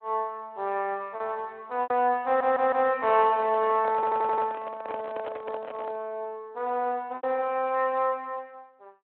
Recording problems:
telephone audio; 280 Hz to 3.7 kHz, Speex
packet loss; 3% of the sound replaced, filled with repeated pitch periods
audio stuttering; at 2.5 s and at 4 s
handling noise; from 3 to 6 s; peak -6 dB vs average level

